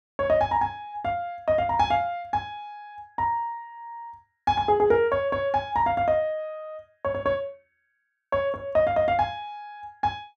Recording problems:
none

